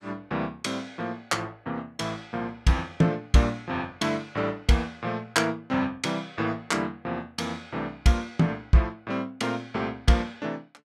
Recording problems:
none

